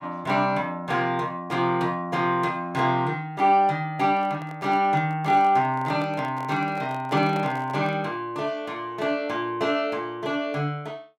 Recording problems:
microphone handling noise; from 4 to 8 s; peak -8 dB vs average level

